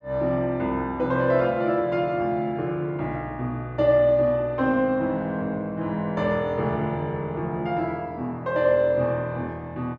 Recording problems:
none

